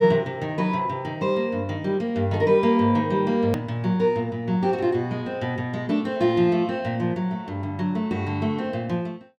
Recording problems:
hard cut with a click; at 3.5 s

